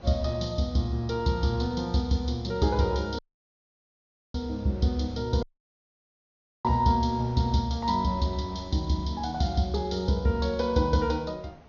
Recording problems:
treble cut off; nothing above 6.6 kHz
wind on the microphone; below 730 Hz, SNR 24 dB
audio cutting out; at 3 s for 1 s and at 5.5 s for 1 s

